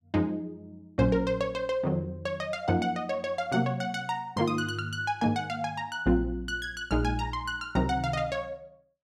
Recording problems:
none

